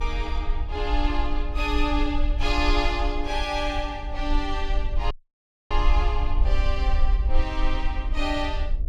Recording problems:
electrical hum; 60 Hz, harmonics up to 660 Hz, SNR 18 dB
rumble; below 50 Hz, strongest tone 22 Hz, SNR 0 dB
dropout; at 5 s for 0.5 s

